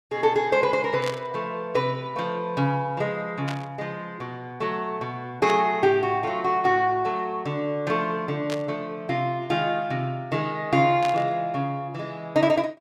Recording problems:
static burst; 5 times, first at 1 s; peak -4 dB vs average level

